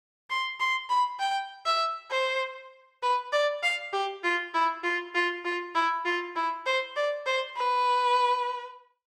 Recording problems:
none

